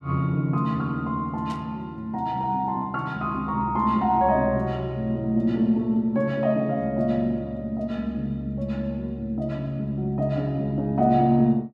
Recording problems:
burst of static; at 1.5 s; peak -14 dB vs average level

